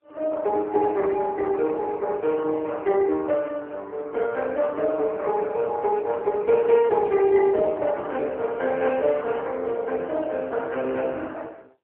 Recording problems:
telephone audio; 280 Hz to 2.3 kHz, AMR-NB

